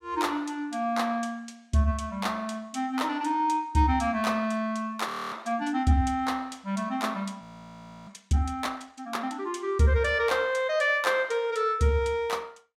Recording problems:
audio freezing; at 5 s and at 7.5 s for 0.5 s

